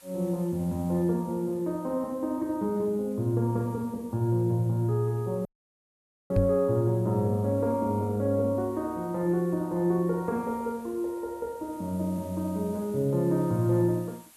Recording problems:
background hiss; slope 0 dB per octave, SNR 26 dB
audio cutting out; at 5.5 s for 1 s
microphone thump; at 6.5 s; peak +5 dB vs average level

